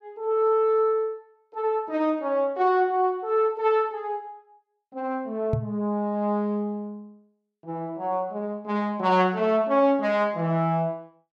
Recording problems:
microphone bump; at 5.5 s; peak +2 dB vs average level

